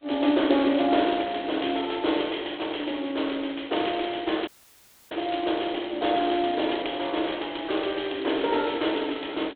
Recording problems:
phone line; 240 Hz to 3.5 kHz, G.726
dropout; at 4.5 s for 0.5 s

